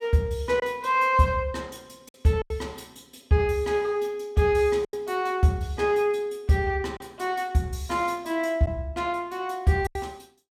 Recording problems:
lost packets; 3% of the sound replaced, filled with silence

